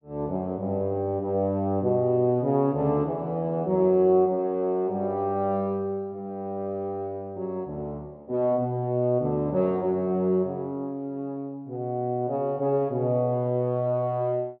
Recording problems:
none

